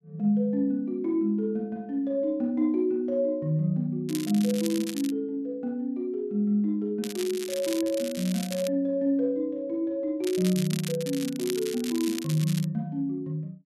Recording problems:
crackle; from 4 to 5 s, from 7 to 8.5 s and from 10 to 13 s; loose cable, SNR 11 dB

